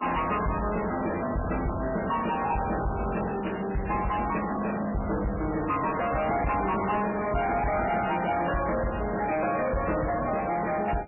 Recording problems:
codec artefacts; MP3, log-spectral distance 9 dB, nothing above 2.8 kHz
distorted audio; soft clipping, signal-to-distortion ratio 7 dB

